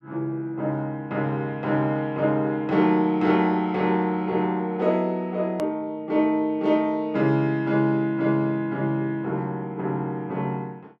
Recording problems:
edit click; at 5.5 s

